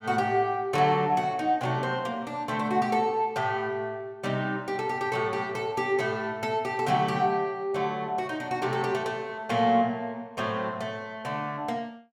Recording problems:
none

